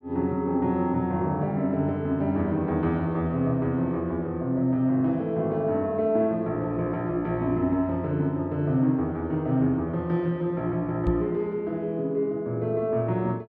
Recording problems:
microphone thump; at 11 s; peak +1 dB vs average level

